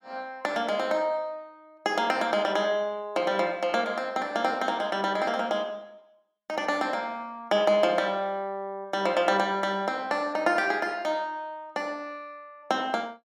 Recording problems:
none

